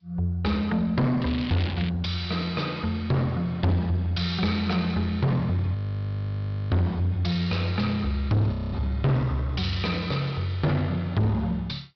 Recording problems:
low-pass filter; nothing above 5.2 kHz
lossy compression; G.722, log-spectral distance 2 dB
distortion; soft clipping, signal-to-distortion ratio 7 dB
crackling; at 1 s; loose cable, SNR 12 dB
frozen audio; at 6 s for 1 s and at 8.5 s

